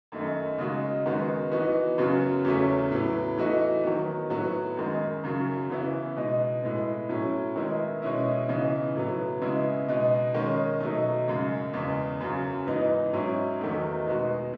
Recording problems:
none

